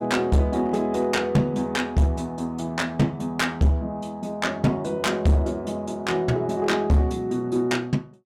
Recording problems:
distortion; hard clipping, uneven, signal-to-distortion ratio 10 dB

